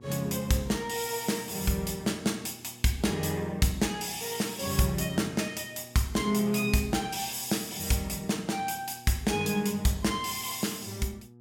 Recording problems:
electrical hum; 60 Hz, harmonics up to 840 Hz, SNR 23 dB

